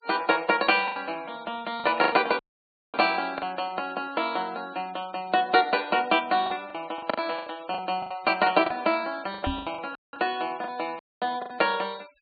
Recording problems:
low-pass filter; nothing above 4.5 kHz
denoising artefacts; signal-to-artefact ratio 23 dB
packet loss; 9% of the sound replaced, filled with the last packet
audio cutting out; at 2.5 s for 0.5 s, at 10 s and at 11 s
knock on the microphone; at 9.5 s; peak 0 dB vs average level

